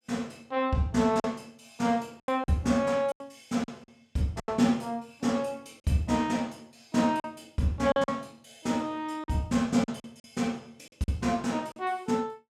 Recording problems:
lost packets; 7% of the sound replaced, filled with silence

